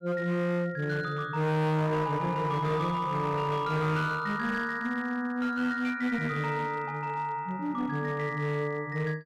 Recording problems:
distortion; hard clipping, uneven, signal-to-distortion ratio 10 dB

